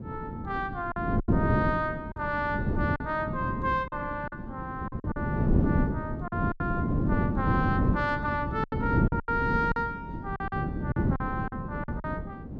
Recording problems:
wind on the microphone; below 280 Hz, SNR -1 dB
lost packets; 8% of the sound replaced, filled with silence

